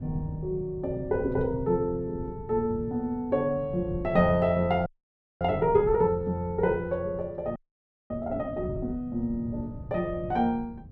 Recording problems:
wind noise; below 170 Hz, SNR 13 dB
audio freezing; at 5 s for 0.5 s and at 7.5 s for 0.5 s

